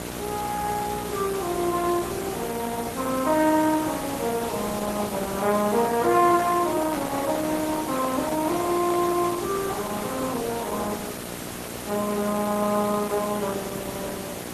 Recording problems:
codec artefacts; Opus, log-spectral distance 8 dB
hum; 60 Hz, harmonics up to 2.2 kHz, SNR 12 dB
background hiss; slope -3 dB per octave, SNR 10 dB
handling noise; from 5.5 to 9.5 s; peak -5 dB vs average level

